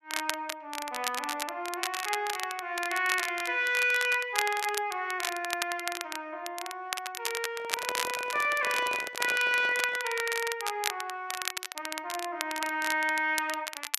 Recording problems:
crackling; vinyl, SNR 6 dB
microphone handling noise; from 7.5 to 10 s; peak -6 dB vs average level

